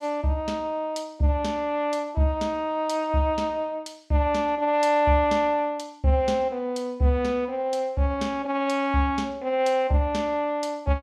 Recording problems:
none

